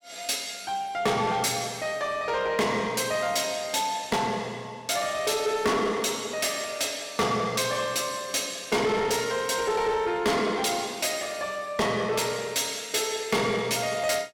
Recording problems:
distortion; soft clipping, signal-to-distortion ratio 6 dB

